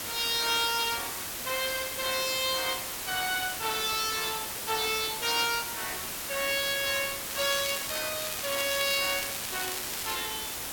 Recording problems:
hiss; slope -1 dB per octave, SNR 3 dB
crackle; at 7.5 s and from 8 to 10 s; loose cable, SNR 7 dB

